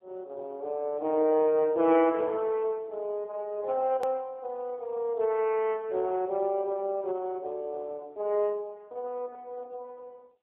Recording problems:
phone line; 280 Hz to 3.3 kHz, AMR-NB
edit click; at 4 s

